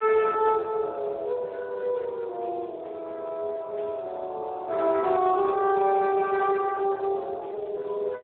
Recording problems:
phone line; 320 Hz to 3 kHz, Speex

